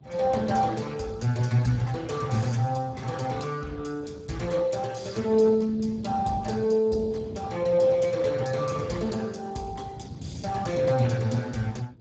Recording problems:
codec artefacts; Speex, log-spectral distance 4 dB, nothing above 7.6 kHz
wind noise; below 230 Hz, SNR 16 dB

